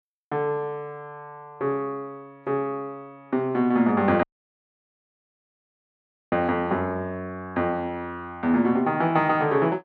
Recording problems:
audio cutting out; at 4 s for 2 s

